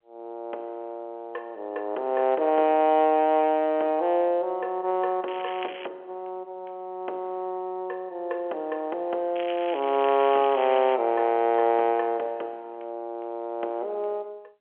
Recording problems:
phone line; 300 Hz to 3.4 kHz, G.711
crackling; at 5.5 s and from 9.5 to 11 s; loose cable, SNR 15 dB

